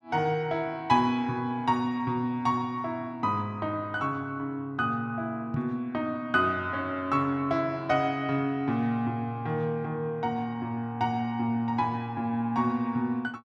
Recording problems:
microphone thump; at 5.5 s; peak 0 dB vs average level

